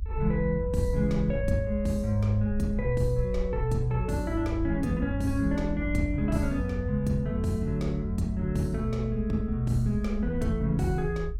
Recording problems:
rumble; below 68 Hz, strongest tone 50 Hz, SNR 7 dB

